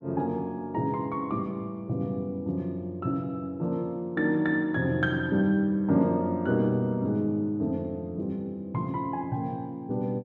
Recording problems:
none

